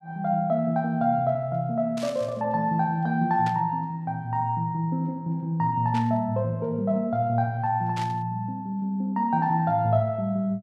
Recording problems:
static burst; 4 times, first at 2 s; peak -9 dB vs average level

